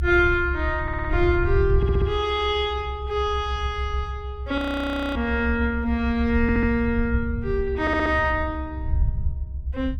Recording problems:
low-frequency rumble; below 82 Hz, SNR 5 dB
audio stuttering; 4 times, first at 1 s
frozen audio; at 4.5 s for 0.5 s

